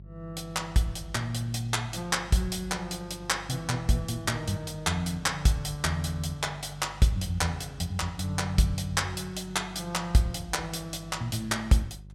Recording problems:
electrical hum; 50 Hz, harmonics up to 400 Hz, SNR 18 dB

